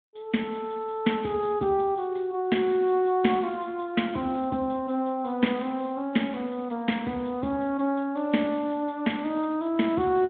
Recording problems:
phone line; 150 Hz to 3.5 kHz, Speex

